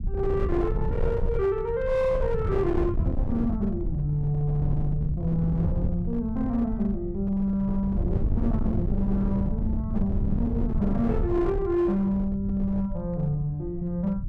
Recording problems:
distorted audio; hard clipping, signal-to-distortion ratio 10 dB
low-frequency rumble; below 120 Hz, SNR 4 dB

